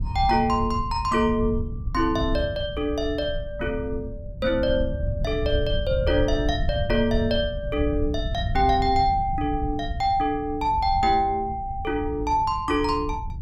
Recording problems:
wind on the microphone; below 100 Hz, SNR 7 dB

